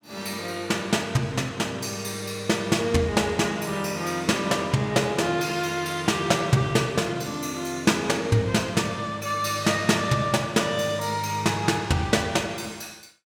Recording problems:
none

